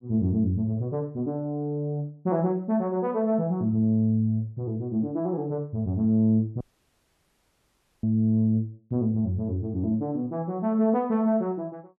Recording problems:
audio cutting out; at 6.5 s for 1.5 s

